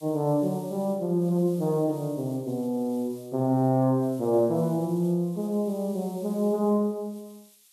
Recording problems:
hiss; SNR 25 dB

